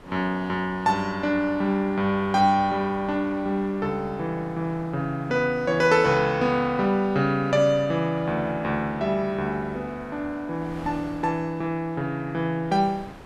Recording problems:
wind noise; below 1.1 kHz, SNR 22 dB

